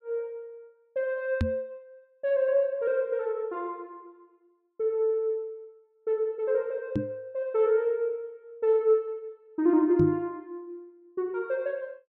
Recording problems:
microphone thump; at 1.5 s, at 7 s and at 10 s; peak +4 dB vs average level

